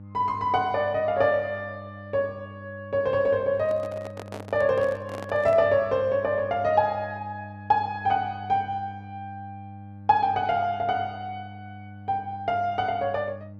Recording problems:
hum; 50 Hz, harmonics up to 600 Hz, SNR 17 dB
handling noise; from 3.5 to 5.5 s; peak -8 dB vs average level

